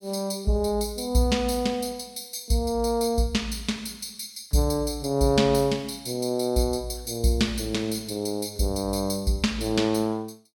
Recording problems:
none

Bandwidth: 17 kHz